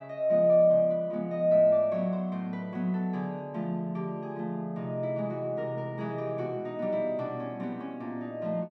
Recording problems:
none

